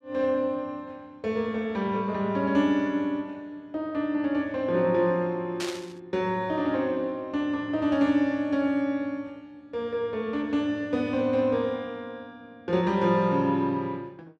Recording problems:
burst of static; at 5.5 s; peak -3 dB vs average level

